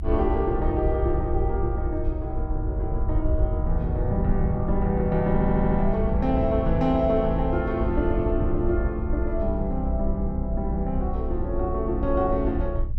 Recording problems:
rumble; below 76 Hz, SNR 2 dB
audio stuttering; at 5.5 s

